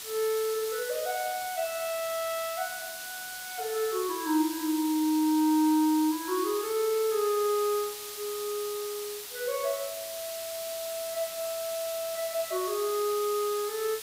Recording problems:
background hiss; slope +2 dB per octave, SNR 8 dB

